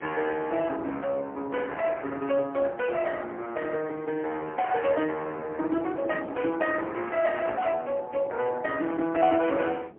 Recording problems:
phone line; 280 Hz to 3.1 kHz, AMR-NB, then MP3
wind noise; below 510 Hz, SNR 18 dB

